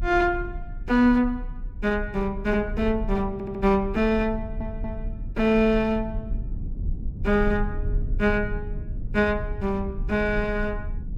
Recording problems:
rumble; below 72 Hz, strongest tone 30 Hz, SNR 9 dB
audio stuttering; at 3.5 s and at 4.5 s

